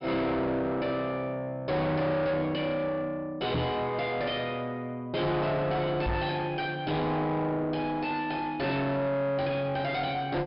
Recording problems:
treble cut off; nothing above 5.5 kHz
distortion; soft clipping, signal-to-distortion ratio 5 dB
microphone bump; at 3.5 s and at 6 s; peak +5 dB vs average level

